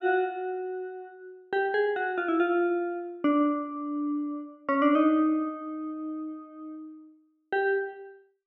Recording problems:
none

